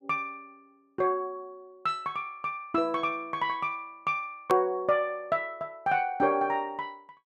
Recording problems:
click at an edit; at 4.5 s

